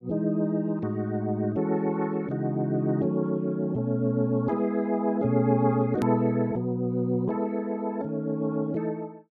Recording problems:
click at an edit; at 6 s

